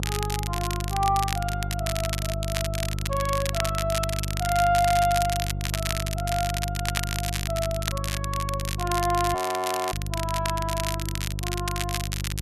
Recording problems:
electrical hum; 50 Hz, harmonics up to 500 Hz, SNR 3 dB
crackling; vinyl, SNR 4 dB
frozen audio; at 9.5 s for 0.5 s

